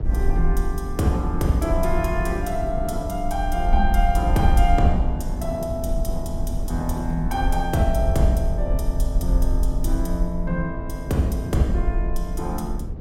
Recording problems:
rumble; below 52 Hz, SNR 2 dB
wind on the microphone; below 260 Hz, SNR 9 dB

